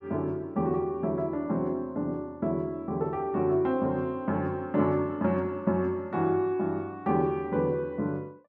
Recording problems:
none

